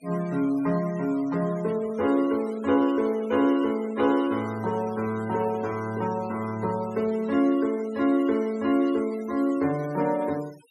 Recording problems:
denoising artefacts; signal-to-artefact ratio 21 dB

